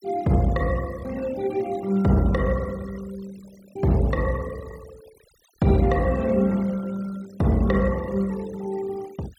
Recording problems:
noise reduction artefacts; signal-to-artefact ratio 23 dB

